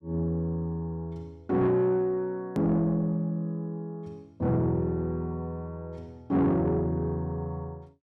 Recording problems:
distorted audio; soft clipping, signal-to-distortion ratio 11 dB
hard cut with a click; at 2.5 s

